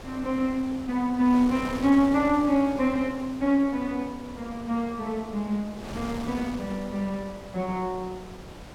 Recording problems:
wind noise; below 1.1 kHz, SNR 14 dB

